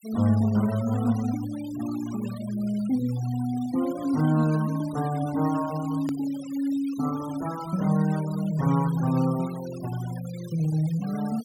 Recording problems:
noise reduction artefacts; signal-to-artefact ratio 18 dB
edit click; at 6 s

